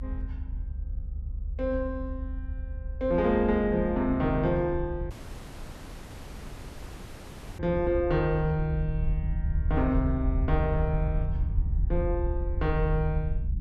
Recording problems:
low-frequency rumble; below 76 Hz, strongest tone 40 Hz, SNR 4 dB
dropout; at 5 s for 2.5 s

